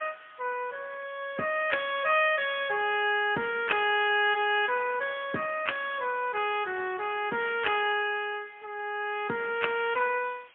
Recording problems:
telephone audio; 220 Hz to 3.4 kHz, AMR-NB, then MP3
hiss; SNR 27 dB

